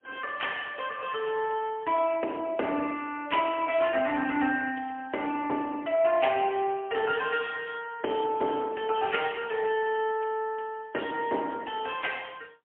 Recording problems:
telephone audio; 240 Hz to 3.3 kHz, AMR-NB, then MP3

